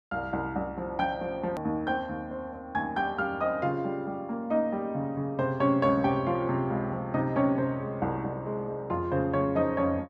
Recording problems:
edit click; at 1.5 s

